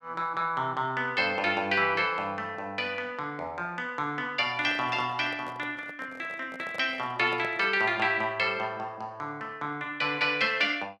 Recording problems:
handling noise; from 4.5 to 8 s; peak -10 dB vs average level

